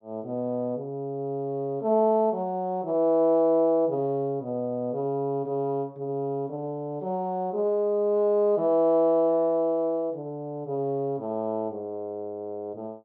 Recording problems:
none

